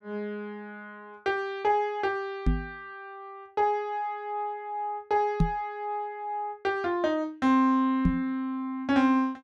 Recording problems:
knock on the microphone; at 2.5 s, at 5.5 s and at 8 s; peak +8 dB vs average level

